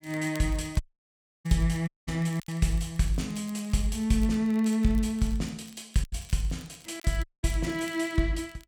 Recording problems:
crackle; vinyl, SNR 24 dB
packet loss; 2% of the sound replaced, filled with silence
audio cutting out; at 1 s for 0.5 s, at 2 s and at 7 s

